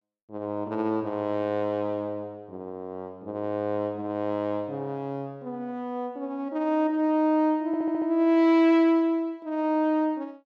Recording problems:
stutter; at 7.5 s

